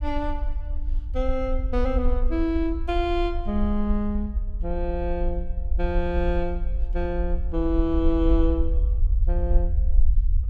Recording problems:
low-frequency rumble; below 54 Hz, SNR 0 dB

